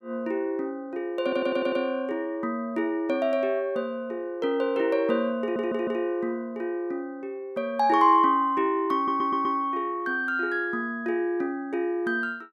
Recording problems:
stutter; at 1 s, at 5.5 s and at 9 s

